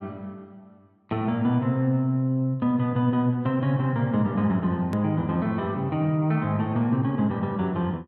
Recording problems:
edit click; at 5 s

